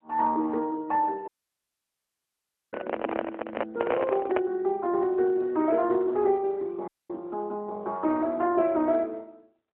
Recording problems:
phone line; 260 Hz to 3.6 kHz, AMR-NB
dropout; at 1.5 s for 1.5 s and at 7 s
handling noise; from 2.5 to 4.5 s; peak +2 dB vs average level

